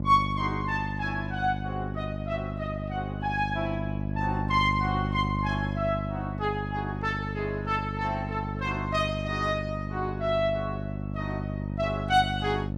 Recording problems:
hum; 50 Hz, harmonics up to 650 Hz, SNR 3 dB

